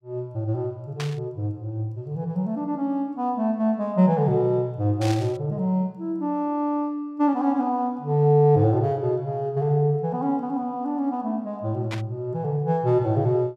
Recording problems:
static burst; at 1 s, at 5 s and at 12 s; peak -5 dB vs average level

